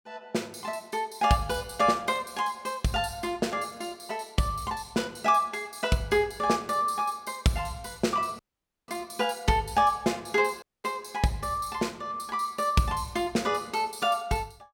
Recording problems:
dropout; at 8.5 s and at 11 s

